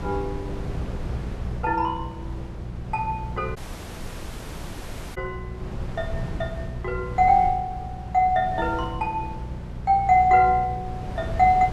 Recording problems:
electrical hum; 60 Hz, harmonics up to 600 Hz, SNR 14 dB
wind on the microphone; below 210 Hz, SNR 12 dB
dropout; at 3.5 s for 1.5 s

